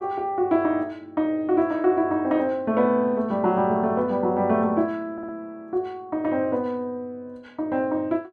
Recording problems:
stutter; at 5 s

